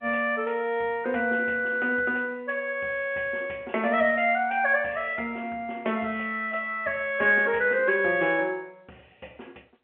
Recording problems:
telephone audio; 280 Hz to 3.3 kHz, G.711

